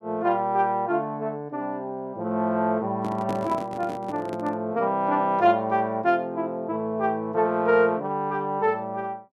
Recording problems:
microphone handling noise; from 3 to 4.5 s; peak -3 dB vs average level

